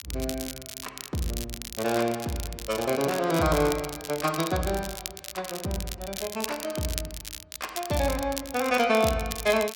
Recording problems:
crackling; vinyl, SNR 9 dB

